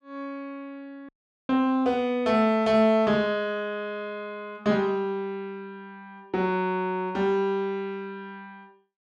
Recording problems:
audio cutting out; at 1 s

